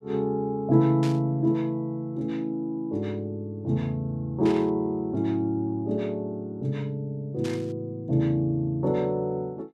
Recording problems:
burst of static; at 1 s, at 4.5 s and at 7.5 s; peak -8 dB vs average level

